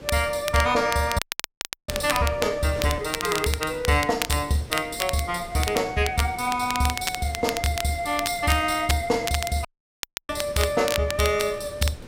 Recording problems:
hum; 50 Hz, harmonics up to 550 Hz, SNR 26 dB
wind noise; below 670 Hz, SNR 18 dB
crackle; vinyl, SNR 8 dB
audio cutting out; at 1 s for 0.5 s and at 9.5 s for 0.5 s

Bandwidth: 16 kHz